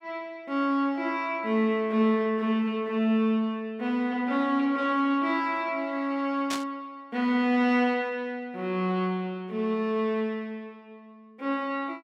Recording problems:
burst of static; at 6.5 s; peak -2 dB vs average level

